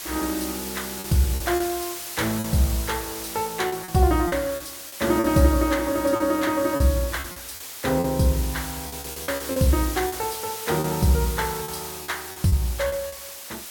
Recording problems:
background hiss; slope +1 dB per octave, SNR 9 dB
packet loss; 9% of the sound replaced, filled with repeated pitch periods

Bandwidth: 17 kHz